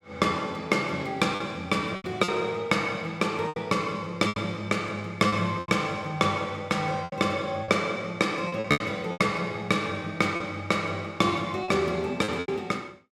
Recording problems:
lost packets; 8% of the sound replaced, filled with repeated pitch periods

